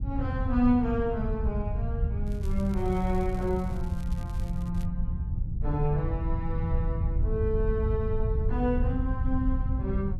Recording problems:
rumble; below 92 Hz, SNR 0 dB
crackling; from 2.5 to 5 s; loose cable, SNR 24 dB

